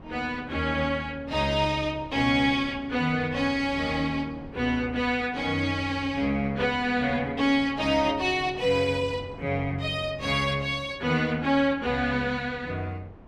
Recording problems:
wind on the microphone; below 530 Hz, SNR 20 dB

